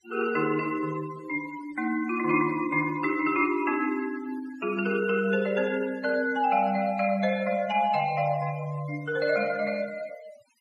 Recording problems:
noise reduction artefacts; signal-to-artefact ratio 19 dB

